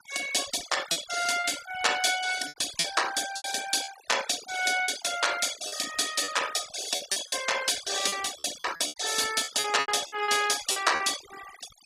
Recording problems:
noise reduction artefacts; signal-to-artefact ratio 12 dB
packet loss; 10% of the sound replaced, filled with repeated pitch periods

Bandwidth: 15 kHz